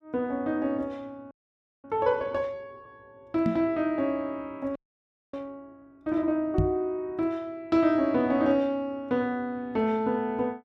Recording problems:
frozen audio; at 1.5 s for 0.5 s and at 5 s for 0.5 s
microphone thump; at 3.5 s and at 6.5 s; peak +6 dB vs average level

